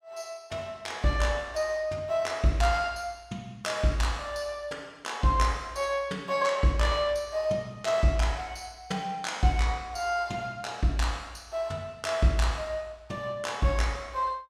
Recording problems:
none

